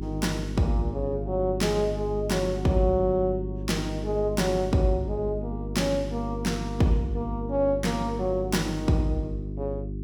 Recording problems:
hum; 50 Hz, harmonics up to 400 Hz, SNR 7 dB

